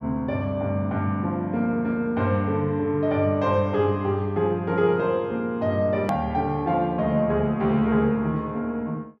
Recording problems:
click at an edit; at 6 s

